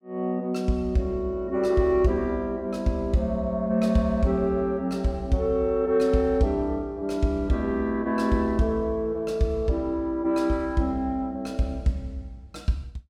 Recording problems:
none

